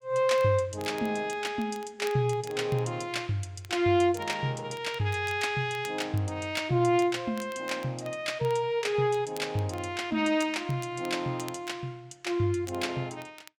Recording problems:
crackle; vinyl, SNR 23 dB

